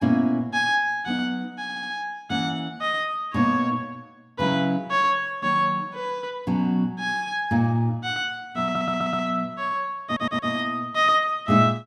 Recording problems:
stutter; at 1.5 s, at 8.5 s and at 10 s

